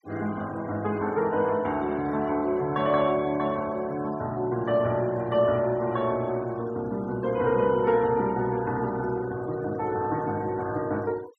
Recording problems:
noise reduction artefacts; signal-to-artefact ratio 22 dB

